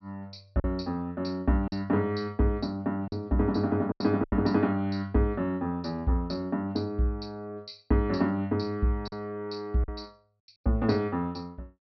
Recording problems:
treble cut off; nothing above 5.5 kHz
packet loss; 4% of the sound replaced, filled with silence

